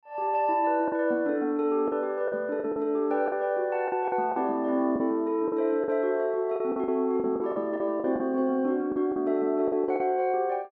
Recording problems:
lost packets; 10% of the sound replaced, filled with the last packet

